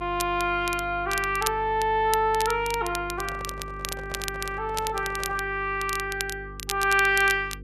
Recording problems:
electrical hum; 50 Hz, harmonics up to 500 Hz, SNR 16 dB
crackle; vinyl, SNR 10 dB
handling noise; from 3 to 5.5 s; peak -12 dB vs average level

